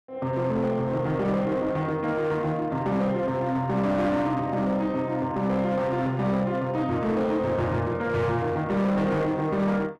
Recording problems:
distorted audio; hard clipping, uneven, signal-to-distortion ratio 10 dB

